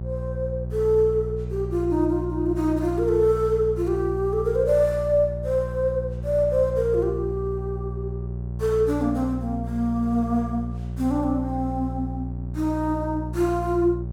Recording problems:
hum; 60 Hz, harmonics up to 600 Hz, SNR 7 dB

